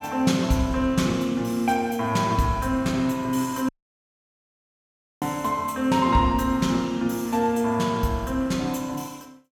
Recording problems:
audio cutting out; at 3.5 s for 1.5 s

